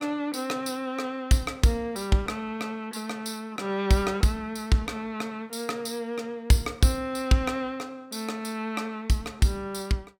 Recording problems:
none

